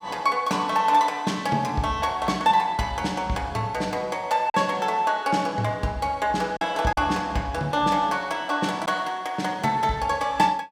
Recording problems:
packet loss; 1.2% of the sound replaced, filled with silence

